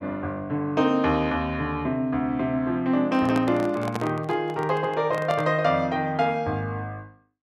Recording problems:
handling noise; from 3 to 5.5 s; peak -2 dB vs average level

